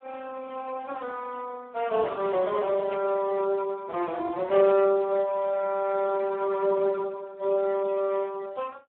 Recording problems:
telephone audio; 280 Hz to 2 kHz, Speex
burst of static; at 3 s and at 4.5 s; peak -9 dB vs average level

